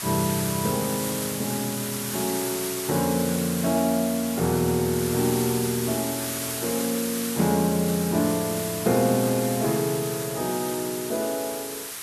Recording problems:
background hiss; slope 0 dB per octave, SNR 5 dB

